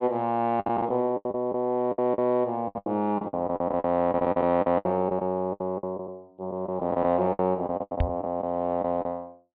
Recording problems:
treble cut off; nothing above 4.6 kHz
packet loss; 16% of the sound replaced, filled with the last packet
knock on the microphone; at 8 s; peak +4 dB vs average level

